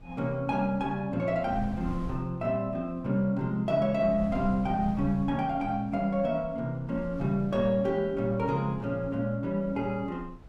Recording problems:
wind on the microphone; below 120 Hz, SNR 16 dB

